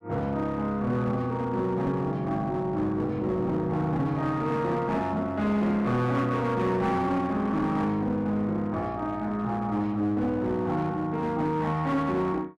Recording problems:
distortion; hard clipping, uneven, signal-to-distortion ratio 11 dB

